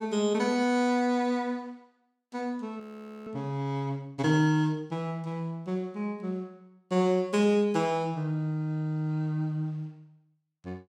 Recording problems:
audio freezing; at 3 s

